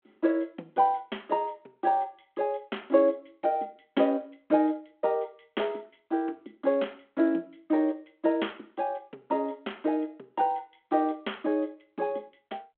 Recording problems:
telephone audio; 240 Hz to 3.3 kHz, G.726

